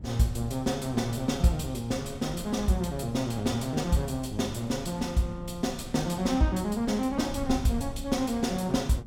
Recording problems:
wind noise; below 100 Hz, SNR 14 dB

